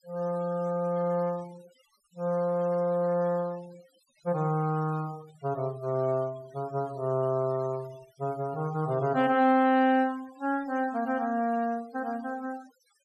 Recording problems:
noise reduction artefacts; signal-to-artefact ratio 24 dB

